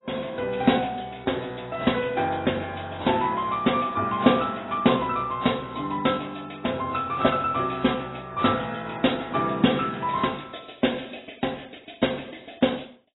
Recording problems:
codec artefacts; AAC, log-spectral distance 9 dB, nothing above 3.9 kHz

